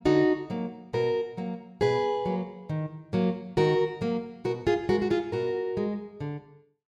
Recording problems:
none

